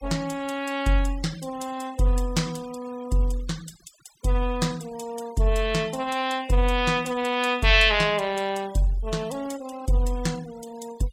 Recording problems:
noise reduction artefacts; signal-to-artefact ratio 21 dB

